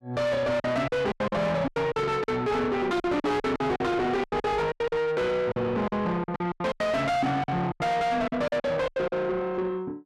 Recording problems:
distorted audio; soft clipping, signal-to-distortion ratio 6 dB
lost packets; 15% of the sound replaced, filled with silence

